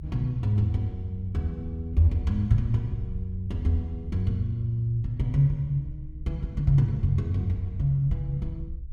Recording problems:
rumble; below 68 Hz, strongest tone 66 Hz, SNR 14 dB

